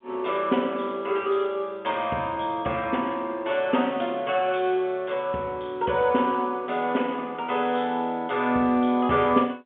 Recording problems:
phone line; 190 Hz to 3.5 kHz, G.711

